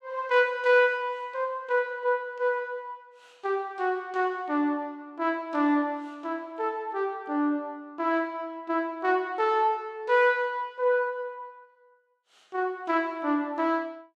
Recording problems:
none

